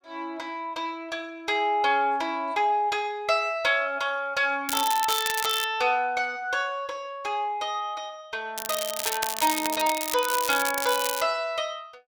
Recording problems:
crackling; at 4.5 s and from 8.5 to 11 s; loose cable, SNR 4 dB

